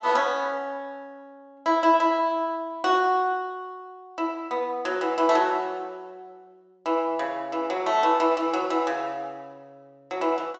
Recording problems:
treble missing; nothing above 8 kHz

